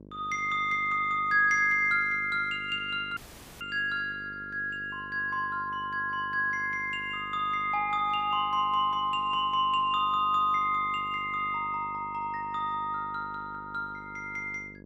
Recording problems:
hum; 50 Hz, harmonics up to 650 Hz, SNR 21 dB
audio cutting out; at 3 s

